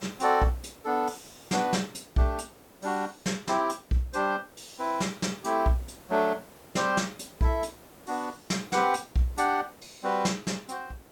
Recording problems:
hiss; slope -6 dB per octave, SNR 23 dB

